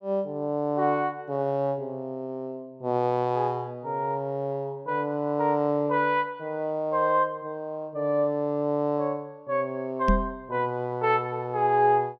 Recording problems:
knock on the microphone; at 10 s; peak +5 dB vs average level

